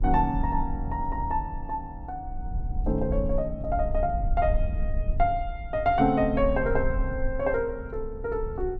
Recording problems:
low-frequency rumble; below 62 Hz, SNR 5 dB

